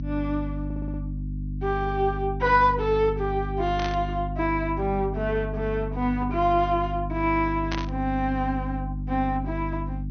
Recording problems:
treble missing; nothing above 6.3 kHz
electrical hum; 50 Hz, harmonics up to 300 Hz, SNR 6 dB
stutter; at 0.5 s
static burst; at 4 s and at 7.5 s; peak -2 dB vs average level

